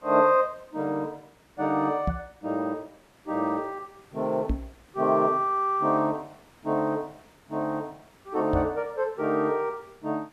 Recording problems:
hiss; slope -4 dB per octave, SNR 29 dB
microphone thump; at 2 s, at 4.5 s and at 8.5 s; peak +3 dB vs average level

